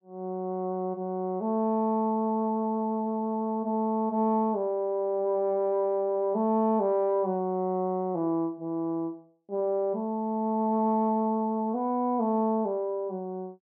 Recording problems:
none

